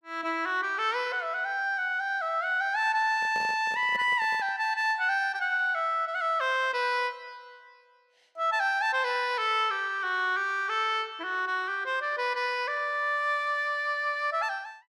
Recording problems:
handling noise; from 3 to 4.5 s; peak -11 dB vs average level

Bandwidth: 14.5 kHz